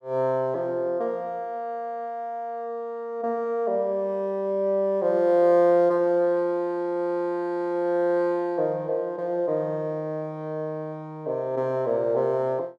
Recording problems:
none

